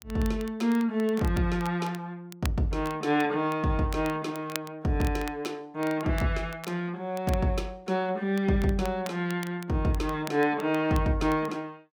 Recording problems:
crackling; vinyl, SNR 18 dB

